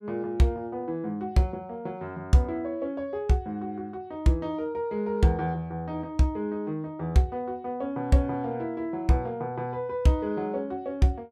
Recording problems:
none

